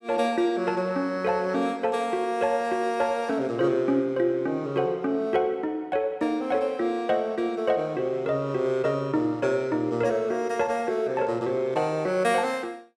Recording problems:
none

